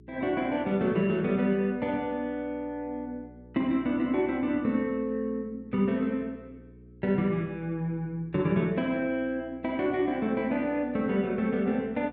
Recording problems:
hum; 60 Hz, harmonics up to 420 Hz, SNR 23 dB

